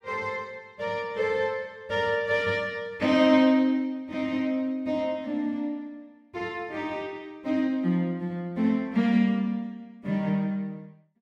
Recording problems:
none

